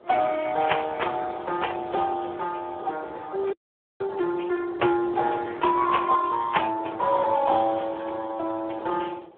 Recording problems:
telephone audio; 280 Hz to 3.6 kHz, Speex
wind on the microphone; below 640 Hz, SNR 20 dB
audio freezing; at 3.5 s

